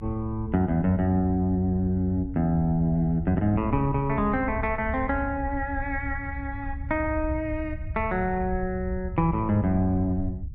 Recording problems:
rumble; below 86 Hz, SNR 10 dB

